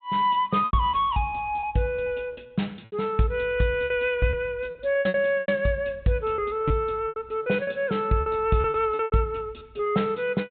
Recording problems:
treble cut off; nothing above 4 kHz
lost packets; 13% of the sound replaced, filled with repeated pitch periods

